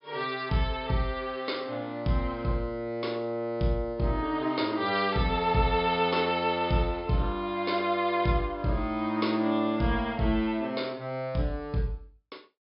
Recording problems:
treble missing; nothing above 5.5 kHz

